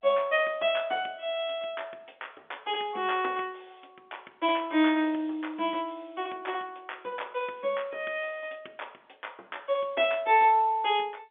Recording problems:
phone line; 260 Hz to 3.5 kHz, G.711

